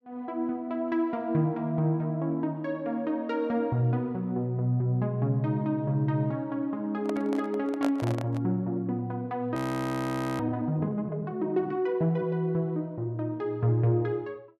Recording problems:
handling noise; from 7 to 8.5 s; peak 0 dB vs average level
frozen audio; at 9.5 s for 1 s

